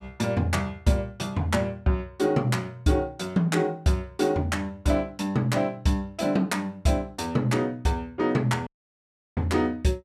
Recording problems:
audio cutting out; at 8.5 s for 0.5 s

